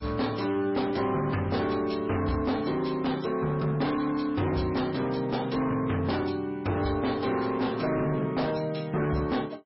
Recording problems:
lossy compression; MP3, log-spectral distance 4 dB, nothing above 5.5 kHz
distortion; hard clipping, uneven, signal-to-distortion ratio 10 dB

